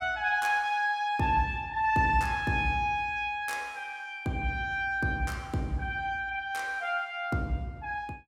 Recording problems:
none

